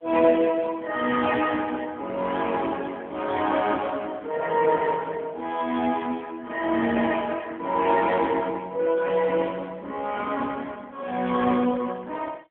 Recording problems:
telephone audio; 190 Hz to 3.3 kHz, AMR-NB

